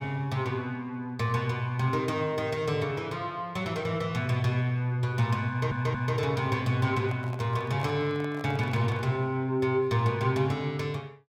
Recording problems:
audio stuttering; at 5.5 s
handling noise; from 7 to 9 s; peak -10 dB vs average level

